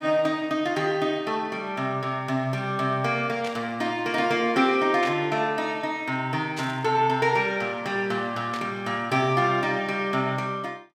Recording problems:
static burst; 4 times, first at 3.5 s; peak -6 dB vs average level

